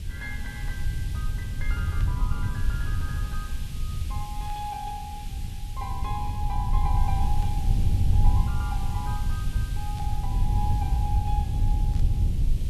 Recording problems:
hiss; SNR 8 dB
rumble; below 92 Hz, SNR -10 dB
burst of static; 5 times, first at 2 s; peak -7 dB vs average level

